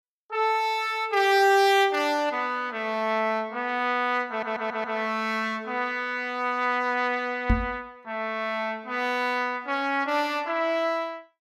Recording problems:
audio stuttering; at 4.5 s
microphone thump; at 7.5 s; peak +5 dB vs average level

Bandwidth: 15 kHz